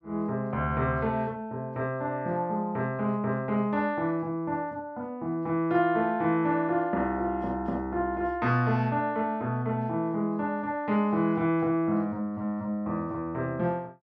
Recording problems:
none

